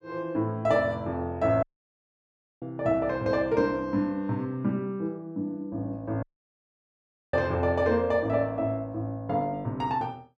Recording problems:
dropout; at 1.5 s for 1 s and at 6 s for 1 s

